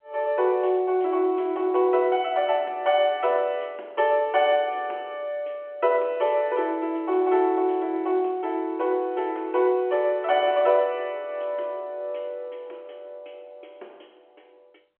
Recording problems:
phone line; 280 Hz to 3.5 kHz, G.711

